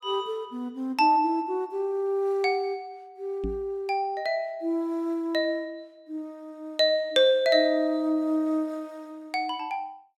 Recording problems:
microphone thump; at 3.5 s; peak -4 dB vs average level

